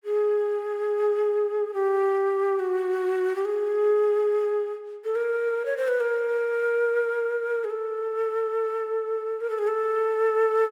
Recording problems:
none

